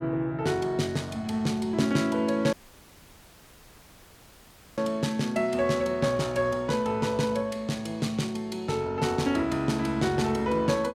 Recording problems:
audio cutting out; at 2.5 s for 2 s

